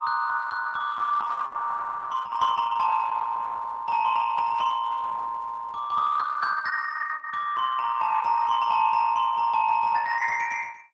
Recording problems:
lossy codec; Opus, log-spectral distance 4 dB, nothing above 7.8 kHz

